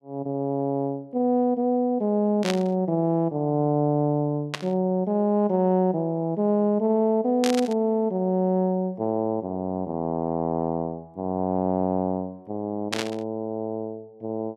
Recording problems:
static burst; 4 times, first at 2.5 s; peak +2 dB vs average level

